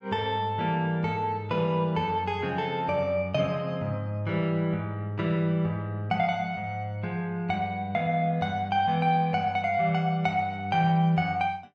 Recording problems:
none

